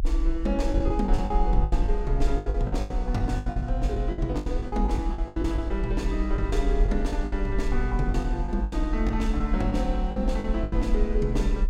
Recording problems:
low-frequency rumble; below 52 Hz, SNR 0 dB
packet loss; 14% of the sound replaced, filled with the last packet

